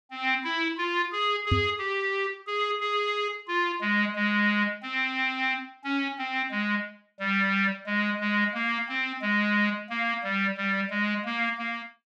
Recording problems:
knock on the microphone; at 1.5 s; peak +5 dB vs average level

